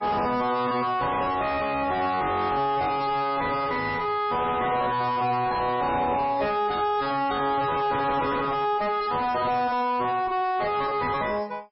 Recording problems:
lossy compression; MP3, log-spectral distance 3 dB, nothing above 5.5 kHz
distortion; soft clipping, signal-to-distortion ratio 6 dB

